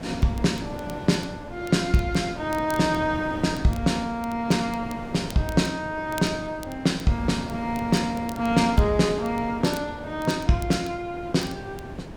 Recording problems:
wind on the microphone; below 530 Hz, SNR 12 dB
crackling; vinyl, SNR 22 dB

